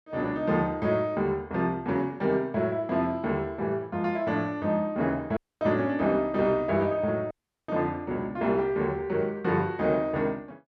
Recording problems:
audio cutting out; at 5.5 s and at 7.5 s

